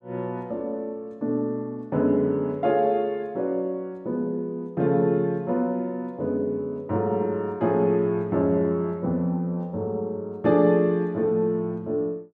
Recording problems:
none

